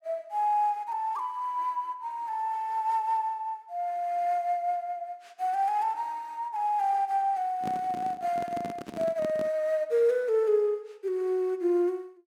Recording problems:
microphone handling noise; from 7.5 to 9.5 s; peak -4 dB vs average level

